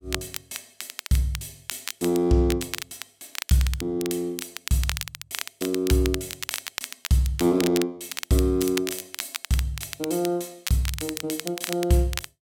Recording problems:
crackle; vinyl, SNR 9 dB

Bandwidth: 16.5 kHz